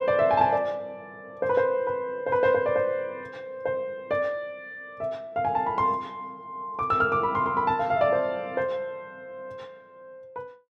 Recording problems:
none

